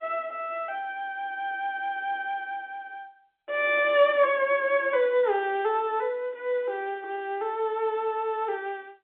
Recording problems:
telephone audio; 280 Hz to 3.8 kHz, G.711

